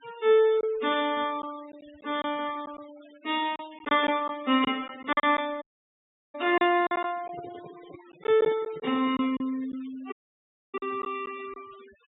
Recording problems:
treble missing; nothing above 4 kHz
denoising artefacts; signal-to-artefact ratio 22 dB
packet loss; 6% of the sound replaced, filled with silence
dropout; at 5.5 s for 0.5 s and at 10 s for 0.5 s
handling noise; from 7 to 9 s; peak -12 dB vs average level

